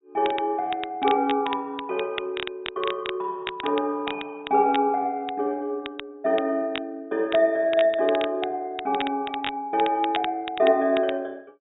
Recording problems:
treble cut off; nothing above 4 kHz
crackling; vinyl, SNR 12 dB

